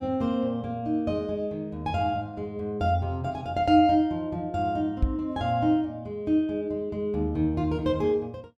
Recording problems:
knock on the microphone; at 5 s; peak +5 dB vs average level

